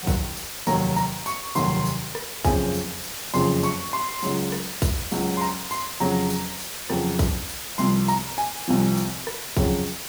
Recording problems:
hiss; slope 0 dB per octave, SNR 6 dB

